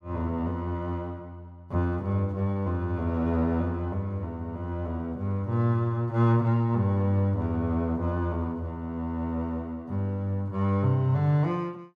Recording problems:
none

